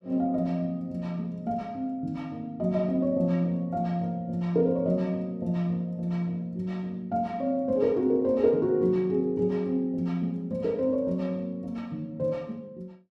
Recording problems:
none

